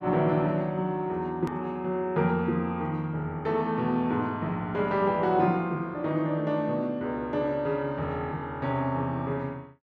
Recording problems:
hard cut with a click; at 1.5 s

